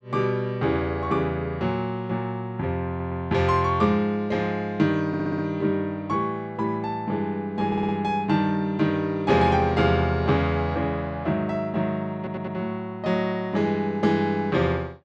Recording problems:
audio stuttering; 4 times, first at 3 s

